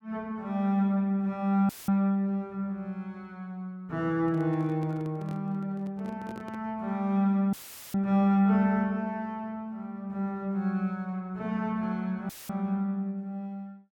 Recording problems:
dropout; at 1.5 s, at 7.5 s and at 12 s; filled with static
handling noise; from 4 to 6.5 s; peak -11 dB vs average level

